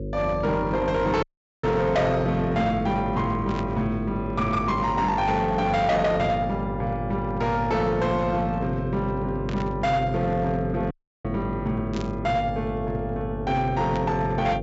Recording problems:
treble missing; nothing above 8 kHz
distorted audio; hard clipping, signal-to-distortion ratio 12 dB
electrical hum; 50 Hz, harmonics up to 550 Hz, SNR 8 dB
dropout; at 1 s and at 11 s
burst of static; 5 times, first at 1.5 s; peak -9 dB vs average level

